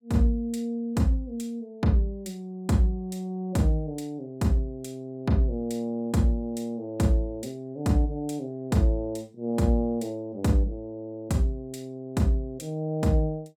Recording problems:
none

